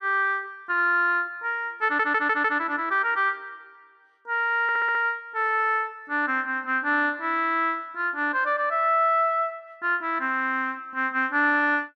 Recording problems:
stutter; at 2 s and at 4.5 s

